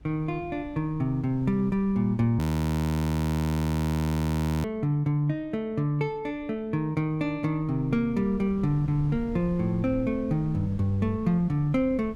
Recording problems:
wind on the microphone; below 150 Hz, SNR 18 dB
audio freezing; at 2.5 s for 2 s

